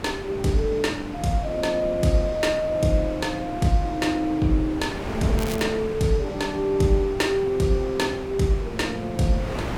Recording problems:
wind on the microphone; below 820 Hz, SNR 11 dB
crackling; at 5.5 s; loose cable, SNR 14 dB

